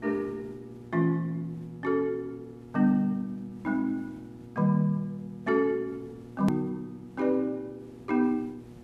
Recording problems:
hum; 60 Hz, harmonics up to 960 Hz, SNR 18 dB
background hiss; slope -6 dB per octave, SNR 27 dB
edit click; at 6.5 s

